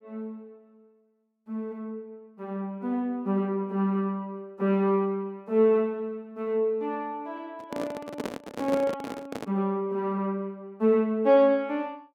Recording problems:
handling noise; from 7.5 to 9.5 s; peak -2 dB vs average level

